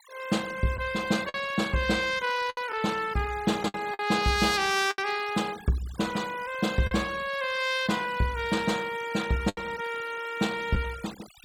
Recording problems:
noise reduction artefacts; signal-to-artefact ratio 15 dB
packet loss; 4% of the sound replaced, filled with the last packet

